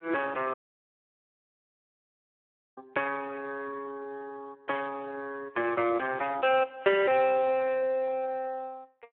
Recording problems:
phone line; 300 Hz to 3 kHz, Speex
dropout; at 0.5 s for 2 s

